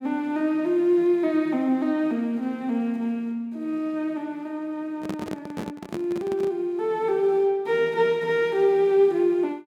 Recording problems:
handling noise; from 5 to 6.5 s; peak -4 dB vs average level

